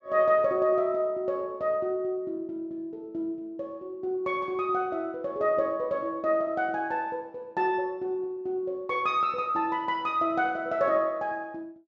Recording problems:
treble cut off; nothing above 8 kHz

